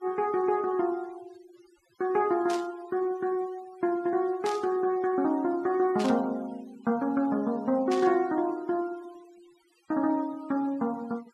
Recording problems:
denoising artefacts; signal-to-artefact ratio 26 dB
burst of static; 4 times, first at 2.5 s; peak -7 dB vs average level

